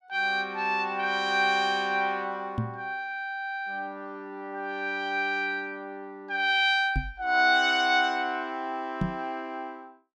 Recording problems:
microphone bump; at 2.5 s, at 7 s and at 9 s; peak +2 dB vs average level

